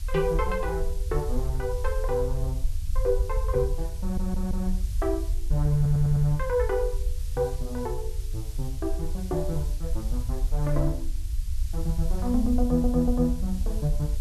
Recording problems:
hiss; slope +3 dB per octave, SNR 19 dB
low-frequency rumble; below 60 Hz, SNR 3 dB
audio stuttering; at 4 s, at 6 s and at 13 s

